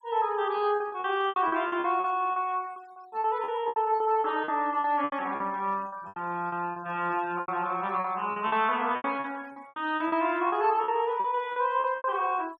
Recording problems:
noise reduction artefacts; signal-to-artefact ratio 26 dB
packet loss; 16% of the sound replaced, filled with repeated pitch periods

